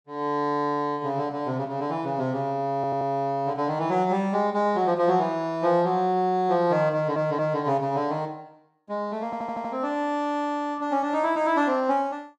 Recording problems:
stutter; at 3 s, at 7 s and at 9.5 s

